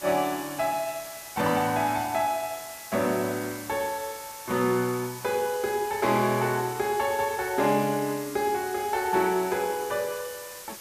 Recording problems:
hiss; slope 0 dB per octave, SNR 13 dB

